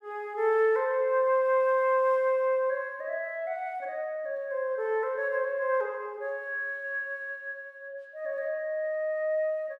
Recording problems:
none

